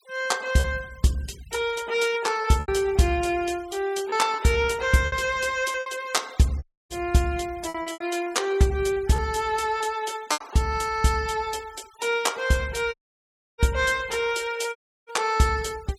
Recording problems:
noise reduction artefacts; signal-to-artefact ratio 22 dB
lost packets; 6% of the sound replaced, filled with repeated pitch periods
dropout; at 6.5 s, at 13 s for 0.5 s and at 15 s

